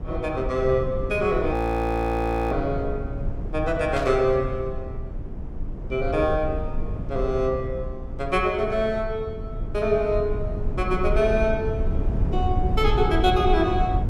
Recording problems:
rumble; below 110 Hz, SNR 5 dB
frozen audio; at 1.5 s for 1 s
static burst; at 4 s; peak -8 dB vs average level

